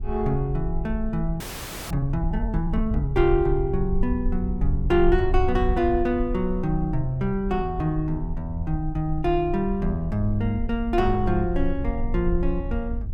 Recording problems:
rumble; below 60 Hz, SNR 6 dB
audio freezing; at 1.5 s for 0.5 s

